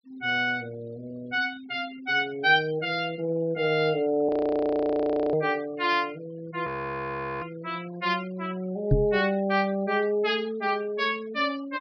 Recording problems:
treble cut off; nothing above 5.5 kHz
noise reduction artefacts; signal-to-artefact ratio 24 dB
frozen audio; at 4.5 s for 1 s and at 6.5 s for 1 s
knock on the microphone; at 9 s; peak +8 dB vs average level

